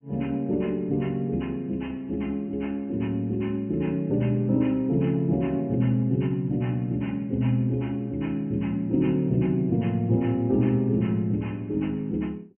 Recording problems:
treble cut off; nothing above 3 kHz

